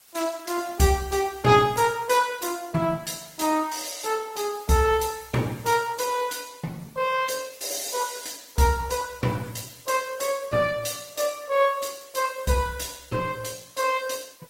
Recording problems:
lossy compression; Opus, log-spectral distance 7 dB, nothing above 16 kHz
background hiss; slope +1 dB per octave, SNR 25 dB

